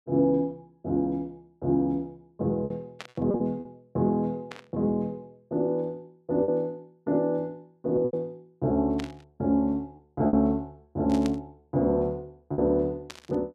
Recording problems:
packet loss; 4% of the sound replaced, filled with repeated pitch periods
burst of static; 5 times, first at 3 s; peak -7 dB vs average level

